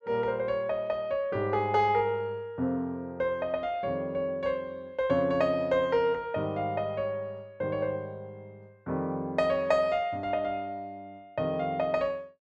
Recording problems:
none

